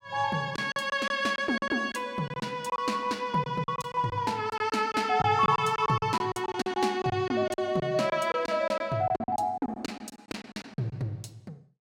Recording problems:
packet loss; 13% of the sound replaced, filled with silence

